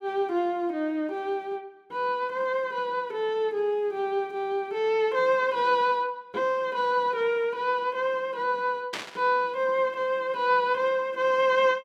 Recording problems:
burst of static; at 9 s; peak -2 dB vs average level

